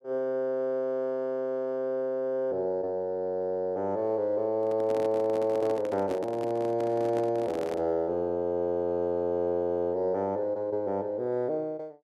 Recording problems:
handling noise; from 4.5 to 8 s; peak -5 dB vs average level

